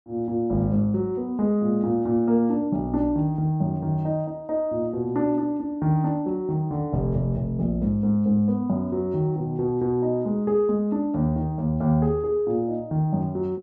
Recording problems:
none

